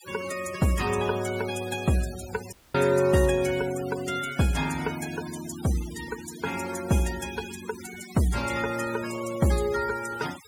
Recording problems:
noise reduction artefacts; signal-to-artefact ratio 13 dB
dropout; at 2.5 s

